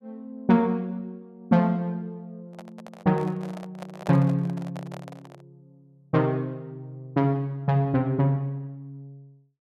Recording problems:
microphone handling noise; from 2.5 to 5.5 s; peak -6 dB vs average level

